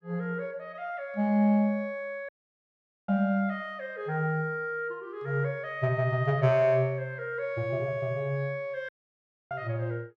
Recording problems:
audio cutting out; at 2.5 s for 1 s and at 9 s for 0.5 s

